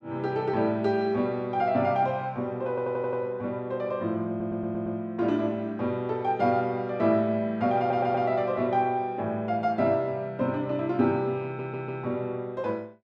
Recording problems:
audio stuttering; 4 times, first at 2.5 s

